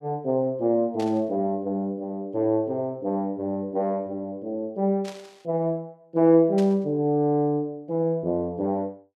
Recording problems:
static burst; at 1 s, at 5 s and at 6.5 s; peak -10 dB vs average level

